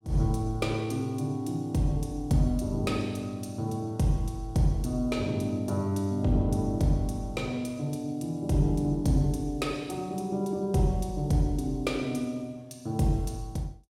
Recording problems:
none

